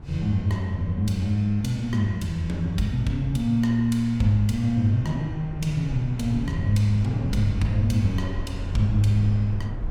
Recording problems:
low-frequency rumble; below 110 Hz, SNR 13 dB

